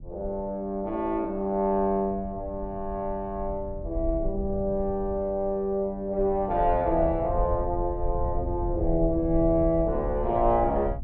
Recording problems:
rumble; below 72 Hz, SNR 9 dB

